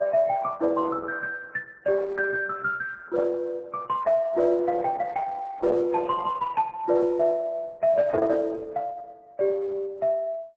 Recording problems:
lossy compression; MP3, then Opus, log-spectral distance 3 dB, nothing above 7.8 kHz

